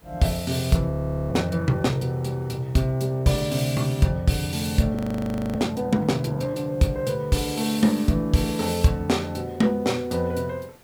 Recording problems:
hiss; slope -5 dB per octave, SNR 29 dB
frozen audio; at 1 s and at 5 s for 0.5 s

